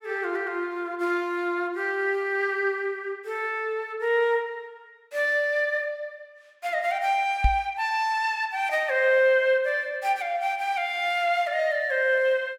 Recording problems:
microphone bump; at 7.5 s; peak +5 dB vs average level

